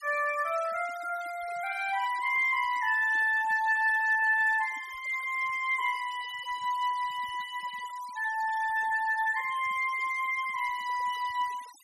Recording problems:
denoising artefacts; signal-to-artefact ratio 20 dB

